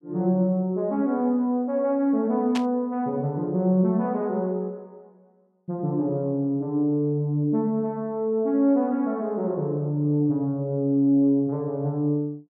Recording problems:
burst of static; at 2.5 s; peak -4 dB vs average level

